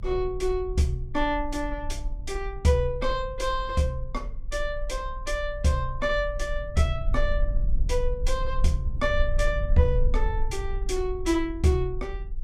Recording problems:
low-frequency rumble; below 46 Hz, strongest tone 22 Hz, SNR 5 dB

